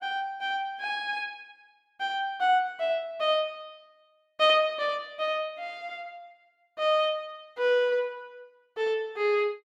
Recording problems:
none

